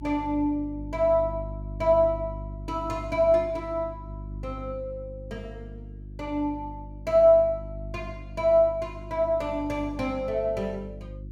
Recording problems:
electrical hum; 50 Hz, harmonics up to 350 Hz, SNR 14 dB

